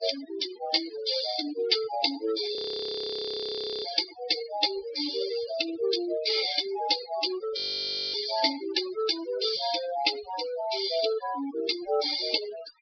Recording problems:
treble cut off; nothing above 5.5 kHz
noise reduction artefacts; signal-to-artefact ratio 9 dB
audio freezing; at 2.5 s for 1.5 s and at 7.5 s for 0.5 s

